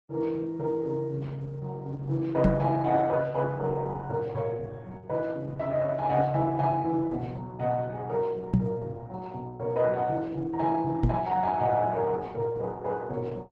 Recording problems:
lossy codec; Opus, log-spectral distance 3 dB
knock on the microphone; at 2.5 s, at 8.5 s and at 11 s; peak +9 dB vs average level

